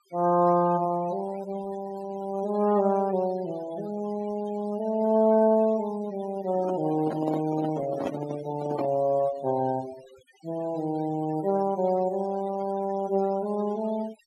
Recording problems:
denoising artefacts; signal-to-artefact ratio 19 dB
microphone handling noise; from 6.5 to 9 s; peak -2 dB vs average level

